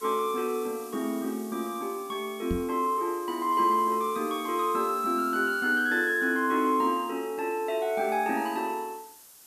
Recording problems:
background hiss; SNR 19 dB
microphone thump; at 2.5 s; peak 0 dB vs average level

